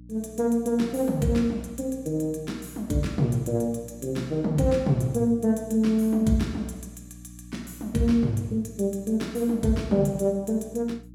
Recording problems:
electrical hum; 60 Hz, harmonics up to 300 Hz, SNR 20 dB

